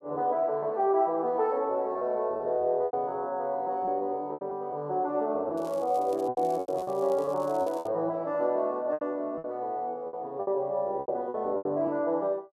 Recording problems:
packet loss; 9% of the sound replaced, filled with repeated pitch periods
crackle; from 5.5 to 8 s; loose cable, SNR 25 dB

